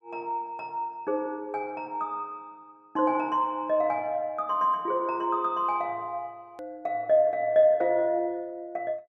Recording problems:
hard cut with a click; at 6.5 s

